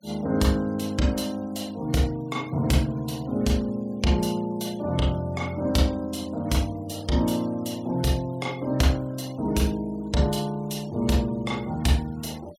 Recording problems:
denoising artefacts; signal-to-artefact ratio 24 dB

